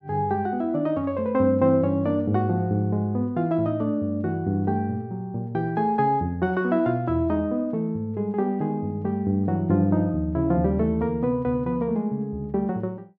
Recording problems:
none

